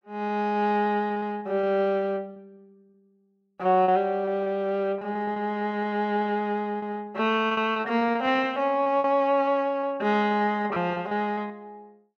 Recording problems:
packet loss; 11% of the sound replaced, filled with repeated pitch periods

